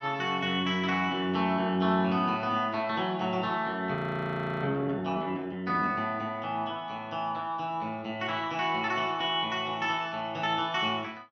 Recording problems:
frozen audio; at 4 s for 0.5 s

